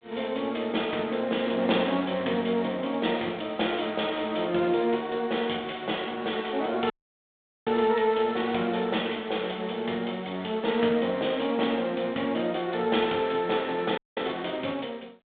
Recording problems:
phone line; 260 Hz to 3.6 kHz, G.726
audio cutting out; at 7 s for 1 s and at 14 s

